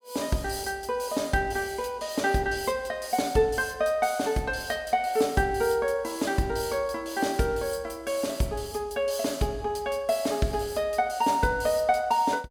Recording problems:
none

